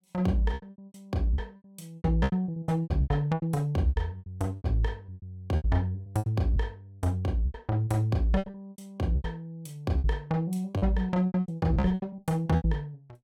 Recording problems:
lost packets; 19% of the sound replaced, filled with repeated pitch periods

